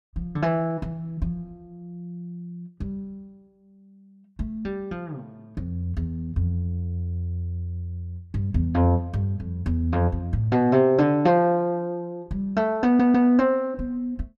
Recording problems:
stutter; at 13 s

